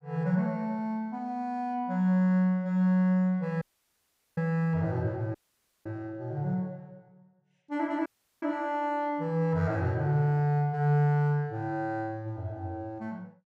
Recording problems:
dropout; at 3.5 s for 1 s, at 5.5 s for 0.5 s and at 8 s

